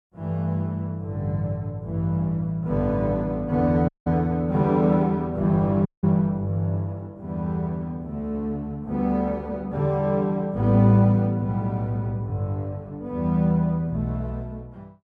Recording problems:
dropout; at 4 s and at 6 s

